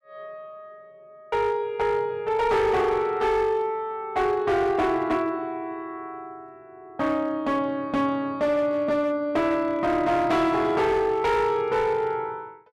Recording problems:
distortion; hard clipping, signal-to-distortion ratio 11 dB

